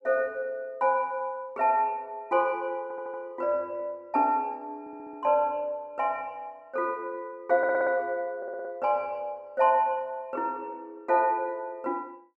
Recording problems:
audio stuttering; 4 times, first at 3 s

